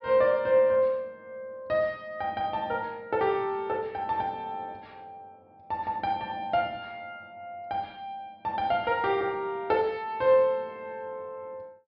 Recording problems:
treble cut off; nothing above 5.5 kHz

